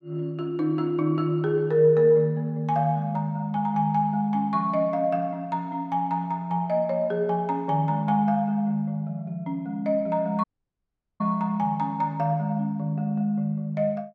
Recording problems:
dropout; at 10 s for 1 s

